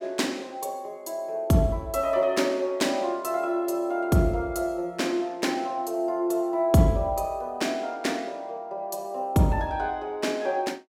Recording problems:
none

